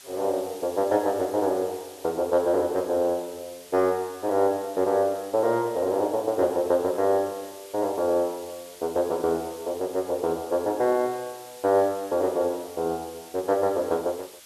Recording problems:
background hiss; slope +2 dB per octave, SNR 20 dB

